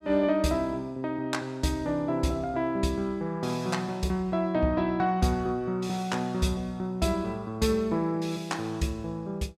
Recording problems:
none

